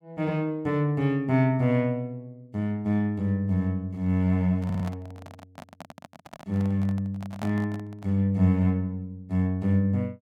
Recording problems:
microphone handling noise; from 4.5 to 8 s; peak -6 dB vs average level
stutter; at 4.5 s

